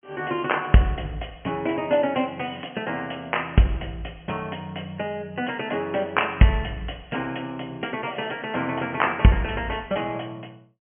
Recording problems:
treble missing; nothing above 3.1 kHz

